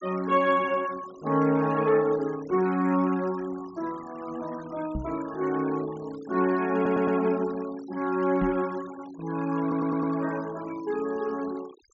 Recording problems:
treble cut off; nothing above 8 kHz
denoising artefacts; signal-to-artefact ratio 20 dB
microphone thump; at 5 s and at 8.5 s; peak +1 dB vs average level
stutter; at 7 s and at 9.5 s

